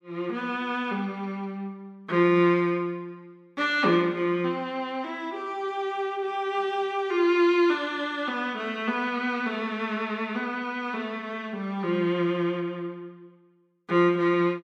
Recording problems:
none

